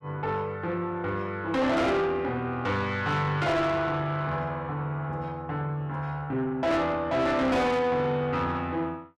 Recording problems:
distorted audio; soft clipping, signal-to-distortion ratio 7 dB

